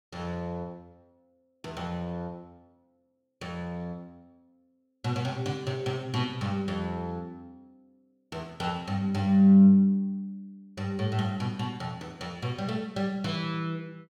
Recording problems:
none

